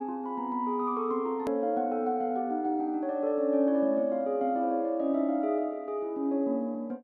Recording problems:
click at an edit; at 1.5 s

